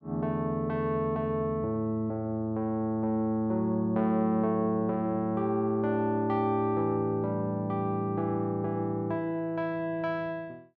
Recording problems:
none

